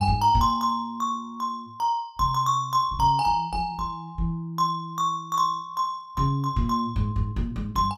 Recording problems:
none

